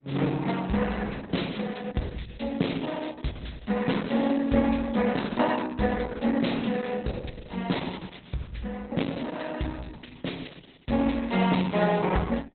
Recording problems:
lossy compression; Opus, log-spectral distance 7 dB, nothing above 4.1 kHz

